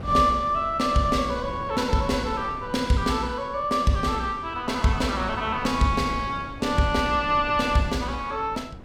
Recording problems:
wind on the microphone; below 390 Hz, SNR 15 dB

